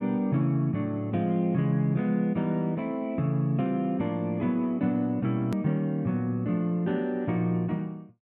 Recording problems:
hard cut with a click; at 5.5 s

